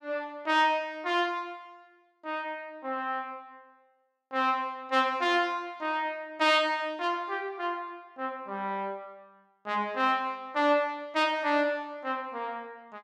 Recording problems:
none

